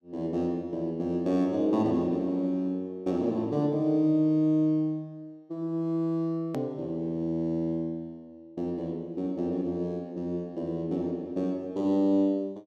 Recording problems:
edit click; at 6.5 s

